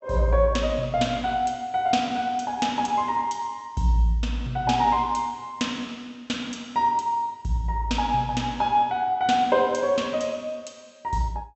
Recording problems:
treble missing; nothing above 8 kHz

